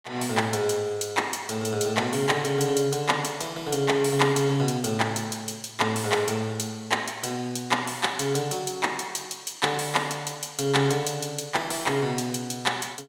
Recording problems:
none

